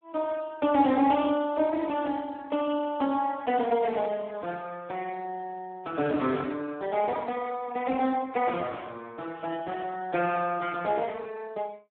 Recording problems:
phone line; 170 Hz to 2.9 kHz, Speex

